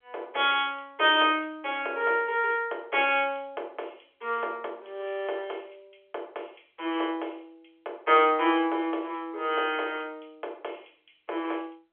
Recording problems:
phone line; 320 Hz to 3.4 kHz, G.711

